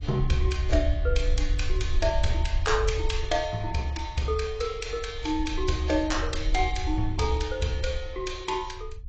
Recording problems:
lossy compression; AAC, log-spectral distance 3 dB, nothing above 7.3 kHz
low-frequency rumble; below 60 Hz, SNR 3 dB

